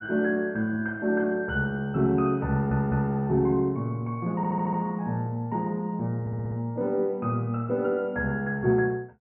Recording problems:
stutter; at 2.5 s, at 4.5 s and at 6 s

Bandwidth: 3 kHz